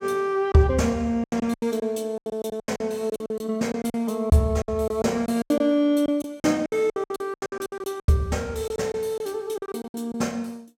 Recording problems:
packet loss; 17% of the sound replaced, filled with silence

